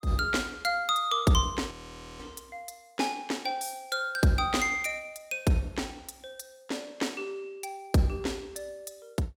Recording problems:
frozen audio; at 1.5 s

